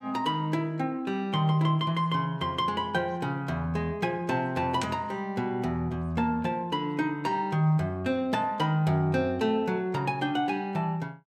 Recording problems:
none

